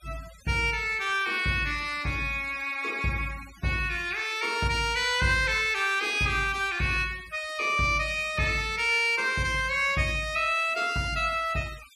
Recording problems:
denoising artefacts; signal-to-artefact ratio 20 dB

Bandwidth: 14.5 kHz